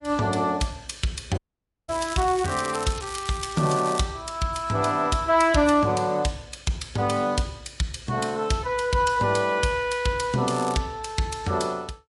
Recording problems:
lossy compression; MP3, log-spectral distance 4 dB, nothing above 11 kHz
crackling; from 1.5 to 4 s and at 10 s; loose cable, SNR 14 dB
audio cutting out; at 1.5 s for 0.5 s

